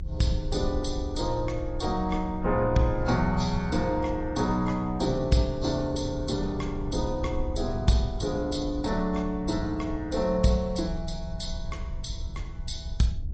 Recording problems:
lossy compression; AAC, log-spectral distance 4 dB, nothing above 8.2 kHz
rumble; below 72 Hz, SNR 9 dB

